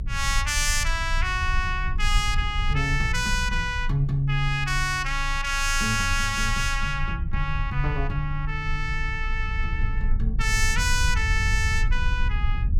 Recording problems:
rumble; below 64 Hz, strongest tone 28 Hz, SNR 4 dB

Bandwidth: 16.5 kHz